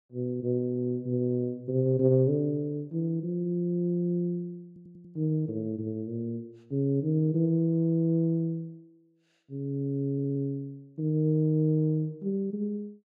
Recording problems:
audio stuttering; at 4.5 s and at 10 s

